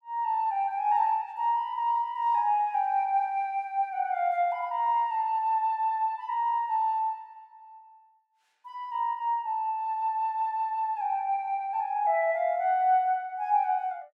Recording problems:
none

